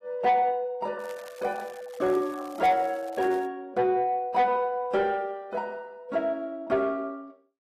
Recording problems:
lossy codec; AAC, log-spectral distance 2 dB
distortion; soft clipping, signal-to-distortion ratio 12 dB
crackle; from 1 to 3.5 s; loose cable, SNR 24 dB

